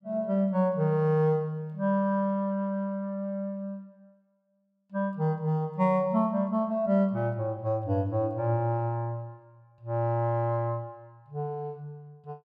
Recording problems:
none

